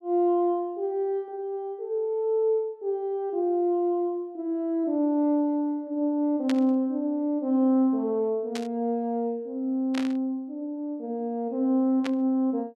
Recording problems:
burst of static; 4 times, first at 6.5 s; peak -4 dB vs average level

